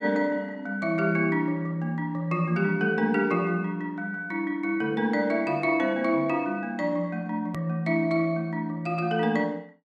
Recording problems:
hard cut with a click; at 7.5 s

